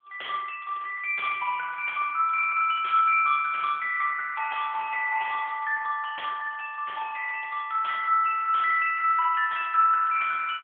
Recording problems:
phone line; 560 Hz to 2.8 kHz, AMR-NB

